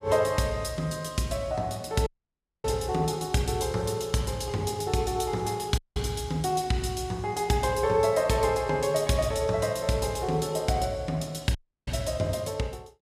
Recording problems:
dropout; at 2 s for 0.5 s, at 6 s and at 12 s

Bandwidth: 14.5 kHz